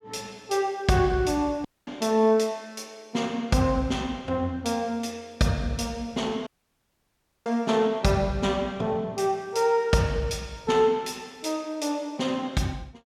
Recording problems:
dropout; at 1.5 s and at 6.5 s for 1 s

